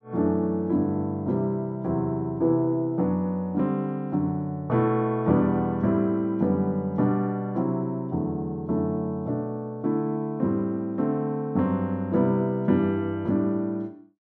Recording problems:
none

